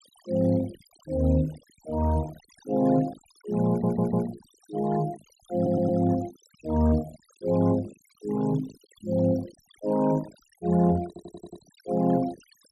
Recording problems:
noise reduction artefacts; signal-to-artefact ratio 19 dB
stutter; at 3.5 s, at 5.5 s and at 11 s

